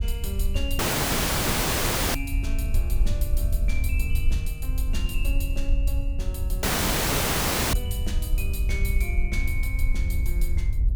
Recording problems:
rumble; below 62 Hz, SNR -7 dB
audio cutting out; at 1 s for 1.5 s and at 6.5 s for 1 s

